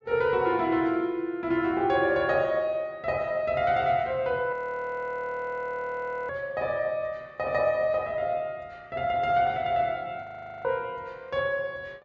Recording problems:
low-pass filter; nothing above 8 kHz
frozen audio; at 4.5 s for 2 s and at 10 s

